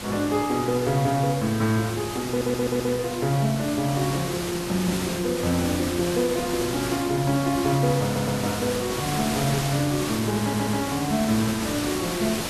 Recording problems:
background hiss; slope -3 dB per octave, SNR 6 dB
audio stuttering; at 2.5 s, at 8 s and at 10 s

